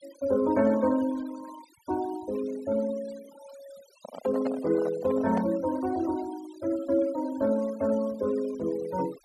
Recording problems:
denoising artefacts; signal-to-artefact ratio 20 dB
handling noise; from 4 to 5.5 s; peak -2 dB vs average level

